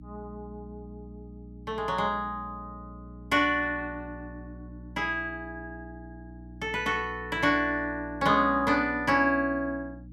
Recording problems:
electrical hum; 60 Hz, harmonics up to 300 Hz, SNR 17 dB

